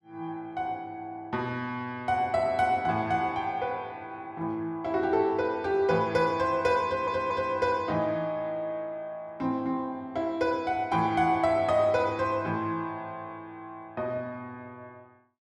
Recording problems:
stutter; at 7 s

